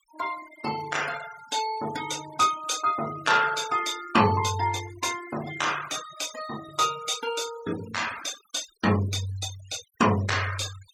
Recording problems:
denoising artefacts; signal-to-artefact ratio 14 dB

